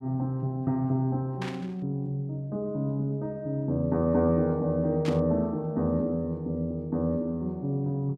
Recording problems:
static burst; at 1.5 s and at 5 s; peak -6 dB vs average level

